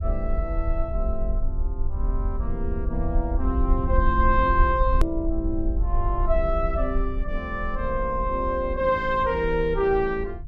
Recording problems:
low-frequency rumble; below 56 Hz, SNR 3 dB
hard cut with a click; at 5 s

